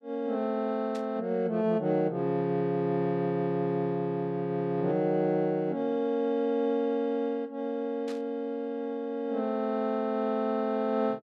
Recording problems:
burst of static; at 1 s and at 8 s; peak -13 dB vs average level

